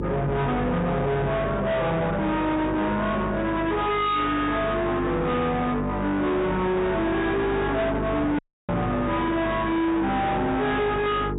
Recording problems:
treble missing; nothing above 4 kHz
distortion; soft clipping, signal-to-distortion ratio 7 dB
hum; 50 Hz, harmonics up to 1.3 kHz, SNR 6 dB
audio cutting out; at 8.5 s

